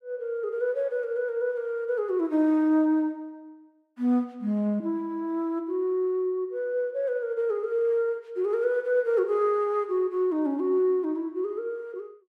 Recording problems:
none

